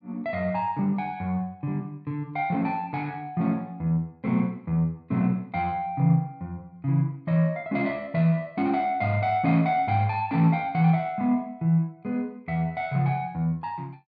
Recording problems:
none

